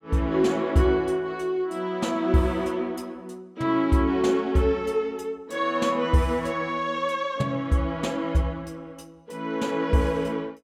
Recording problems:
none

